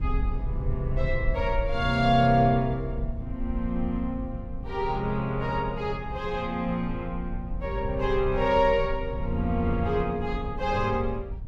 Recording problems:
rumble; below 72 Hz, SNR 8 dB

